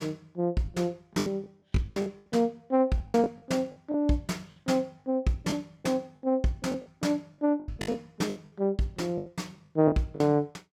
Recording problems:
packet loss; 11% of the sound replaced, filled with the last packet

